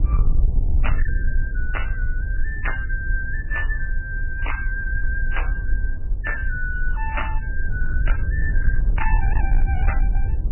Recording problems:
lossy compression; MP3, log-spectral distance 2 dB, nothing above 2.9 kHz
distorted audio; hard clipping, signal-to-distortion ratio 12 dB
rumble; below 56 Hz, SNR -5 dB

